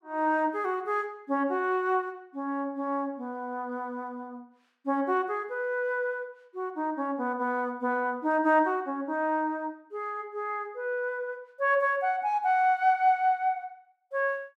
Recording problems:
none

